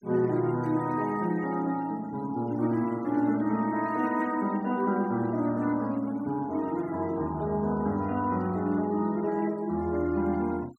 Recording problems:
noise reduction artefacts; signal-to-artefact ratio 25 dB

